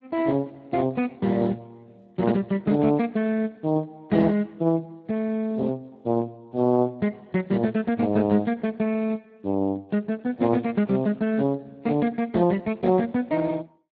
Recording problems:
lossy compression; Speex, log-spectral distance 3 dB

